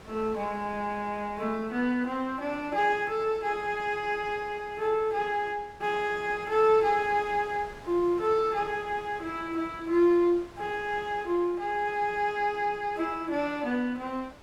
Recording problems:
wind on the microphone; below 1.5 kHz, SNR 22 dB

